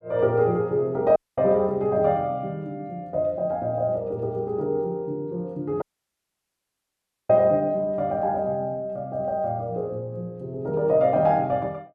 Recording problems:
audio cutting out; at 1 s and at 6 s for 1.5 s

